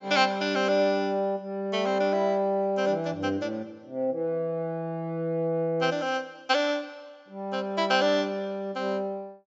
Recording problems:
low-pass filter; nothing above 8 kHz

